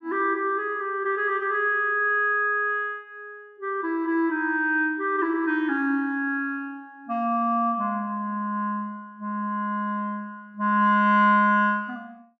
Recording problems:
none

